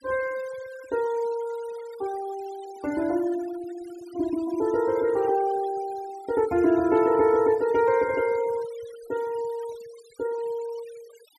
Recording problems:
noise reduction artefacts; signal-to-artefact ratio 21 dB

